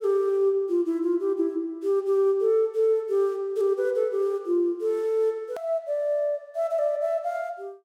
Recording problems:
edit click; at 5.5 s

